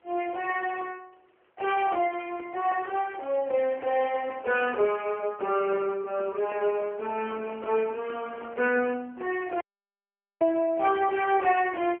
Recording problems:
phone line; 280 Hz to 3.1 kHz, AMR-NB
wind on the microphone; below 1.8 kHz, SNR 24 dB
audio cutting out; at 9.5 s for 1 s

